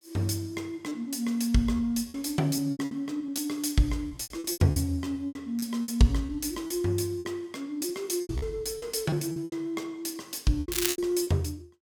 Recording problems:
packet loss; 12% of the sound replaced, filled with repeated pitch periods
crackle; at 11 s; loose cable, SNR 1 dB

